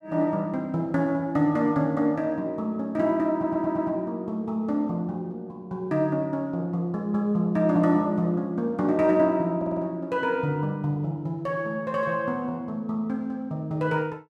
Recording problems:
stutter; at 3.5 s and at 9.5 s

